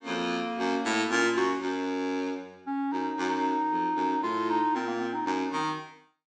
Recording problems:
none

